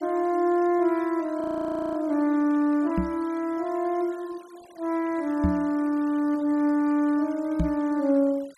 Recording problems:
denoising artefacts; signal-to-artefact ratio 25 dB
frozen audio; at 1.5 s for 0.5 s
microphone bump; at 3 s, at 5.5 s and at 7.5 s; peak +3 dB vs average level

